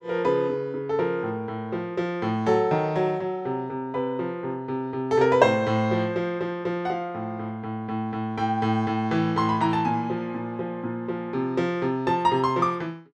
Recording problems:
none

